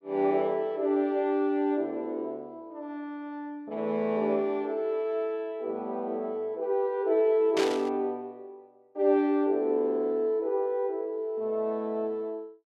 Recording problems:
burst of static; at 7.5 s; peak -1 dB vs average level

